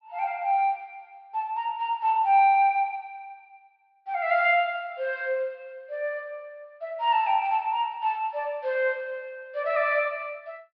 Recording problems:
treble cut off; nothing above 5.5 kHz

